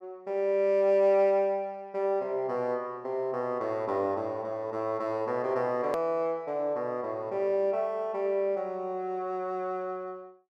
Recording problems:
click at an edit; at 6 s

